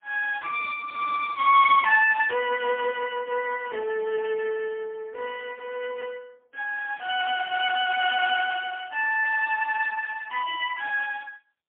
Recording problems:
telephone audio; 340 Hz to 3.3 kHz, AMR-NB, then MP3

